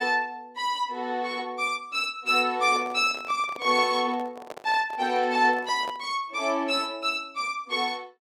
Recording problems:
microphone handling noise; from 2.5 to 6 s; peak -8 dB vs average level

